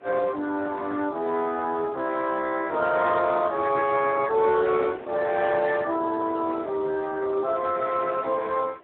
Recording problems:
telephone audio; 240 Hz to 3.1 kHz, Speex
wind on the microphone; below 850 Hz, SNR 24 dB

